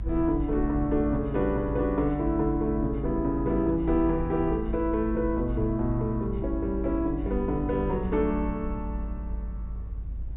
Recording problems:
treble missing; nothing above 4 kHz
rumble; below 60 Hz, strongest tone 52 Hz, SNR 8 dB

